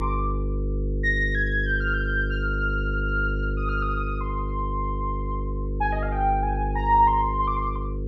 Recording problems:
hum; 50 Hz, harmonics up to 500 Hz, SNR 2 dB

